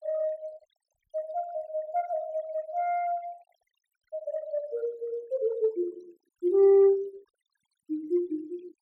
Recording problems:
denoising artefacts; signal-to-artefact ratio 27 dB

